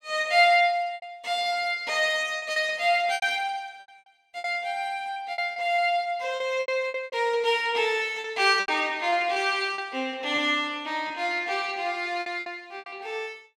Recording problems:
lost packets; 10% of the sound replaced, filled with repeated pitch periods

